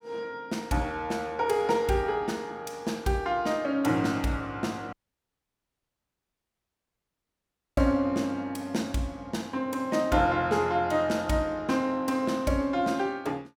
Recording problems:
audio cutting out; at 5 s for 3 s

